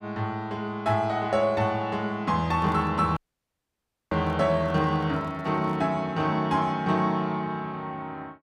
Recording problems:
handling noise; from 2.5 to 6 s; peak -9 dB vs average level
dropout; at 3 s for 1 s

